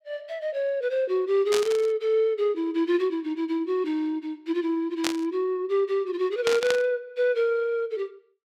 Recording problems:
burst of static; at 1.5 s, at 5 s and at 6.5 s; peak +3 dB vs average level

